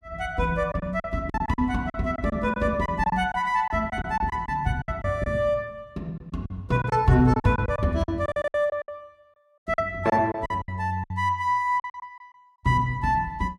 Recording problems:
packet loss; 12% of the sound replaced, filled with silence

